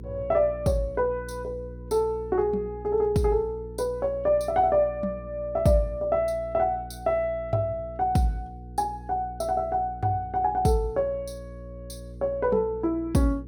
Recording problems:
hum; 60 Hz, harmonics up to 480 Hz, SNR 15 dB

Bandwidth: 17 kHz